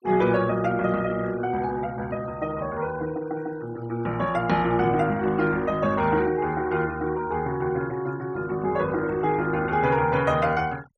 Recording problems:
denoising artefacts; signal-to-artefact ratio 21 dB

